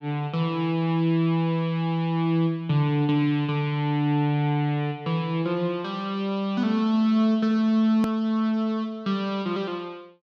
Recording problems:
hard cut with a click; at 8 s

